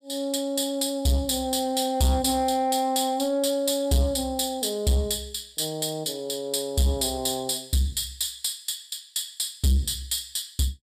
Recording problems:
distorted audio; soft clipping, signal-to-distortion ratio 10 dB

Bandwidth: 14.5 kHz